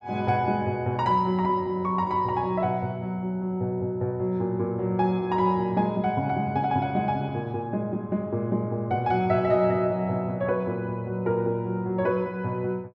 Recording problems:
none

